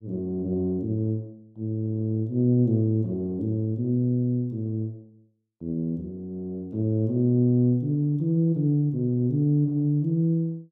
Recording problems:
none

